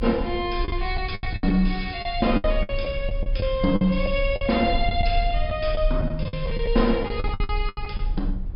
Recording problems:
treble missing; nothing above 5.5 kHz
rumble; below 54 Hz, strongest tone 32 Hz, SNR 5 dB
lost packets; 13% of the sound replaced, filled with the last packet

